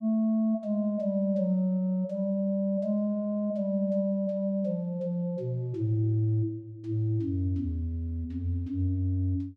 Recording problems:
none

